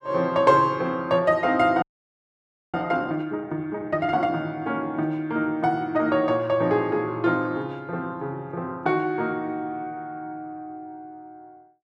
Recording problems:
frozen audio; at 2 s for 1 s

